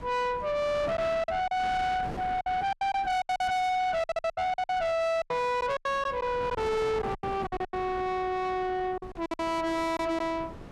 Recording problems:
distortion; soft clipping, signal-to-distortion ratio 7 dB
wind on the microphone; below 930 Hz, SNR 13 dB
lost packets; 12% of the sound replaced, filled with silence

